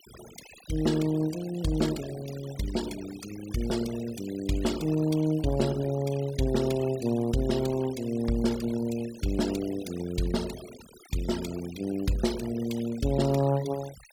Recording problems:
noise reduction artefacts; signal-to-artefact ratio 16 dB

